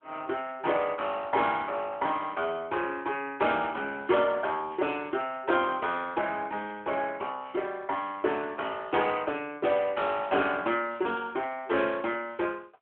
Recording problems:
phone line; 300 Hz to 3.4 kHz, AMR-NB

